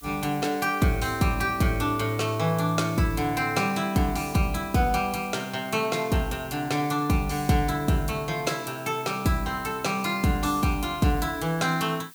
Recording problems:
background hiss; slope +2 dB per octave, SNR 20 dB

